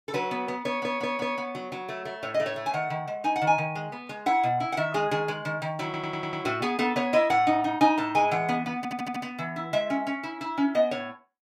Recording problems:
stutter; at 0.5 s, at 6 s and at 9 s

